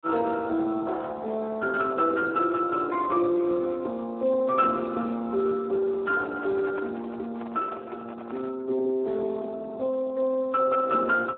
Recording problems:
telephone audio; 260 Hz to 2.6 kHz, Speex
handling noise; from 6 to 8.5 s; peak -8 dB vs average level

